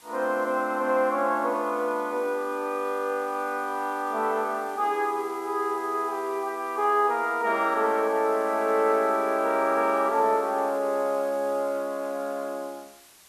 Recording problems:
background hiss; slope 0 dB per octave, SNR 24 dB

